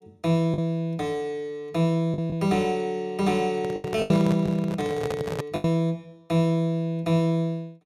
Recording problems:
packet loss; 5% of the sound replaced, filled with the last packet
handling noise; from 3.5 to 5.5 s; peak 0 dB vs average level

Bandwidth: 14.5 kHz